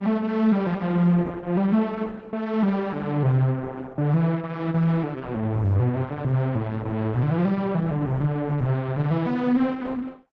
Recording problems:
codec artefacts; Opus, log-spectral distance 2 dB

